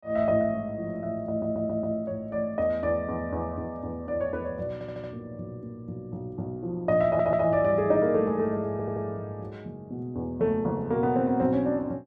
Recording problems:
stutter; 4 times, first at 1.5 s

